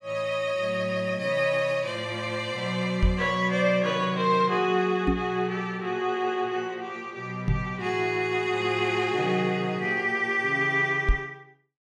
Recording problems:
microphone thump; 4 times, first at 3 s; peak +6 dB vs average level

